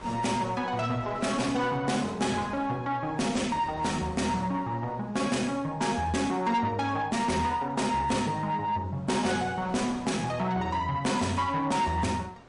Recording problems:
lossy codec; MP3, log-spectral distance 3 dB, nothing above 10.4 kHz
distortion; soft clipping, signal-to-distortion ratio 12 dB
wind noise; below 1.3 kHz, SNR 20 dB

